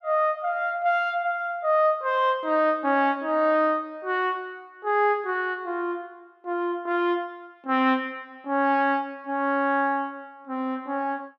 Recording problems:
none

